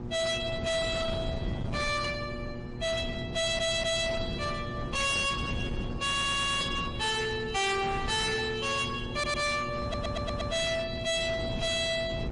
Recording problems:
codec artefacts; MP3, then MP3, log-spectral distance 3 dB, nothing above 10.4 kHz
distorted audio; hard clipping, signal-to-distortion ratio 7 dB
hum; 60 Hz, harmonics up to 1.2 kHz, SNR 13 dB
wind noise; below 300 Hz, SNR 9 dB
audio stuttering; 4 times, first at 3.5 s

